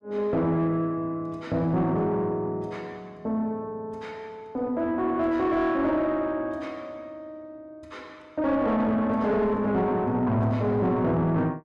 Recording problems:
distortion; soft clipping, signal-to-distortion ratio 10 dB

